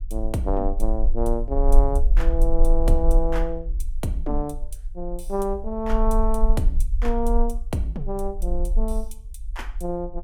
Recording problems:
low-frequency rumble; below 40 Hz, strongest tone 22 Hz, SNR -1 dB

